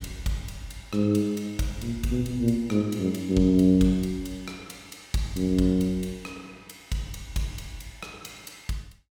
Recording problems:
none

